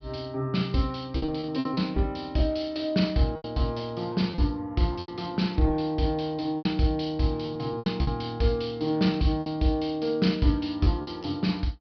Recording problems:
treble cut off; nothing above 5.5 kHz
lost packets; 8% of the sound replaced, filled with repeated pitch periods

